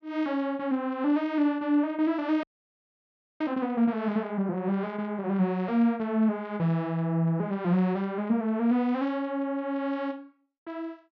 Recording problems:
frozen audio; at 2.5 s for 1 s

